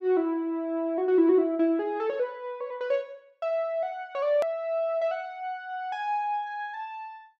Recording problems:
edit click; at 4.5 s

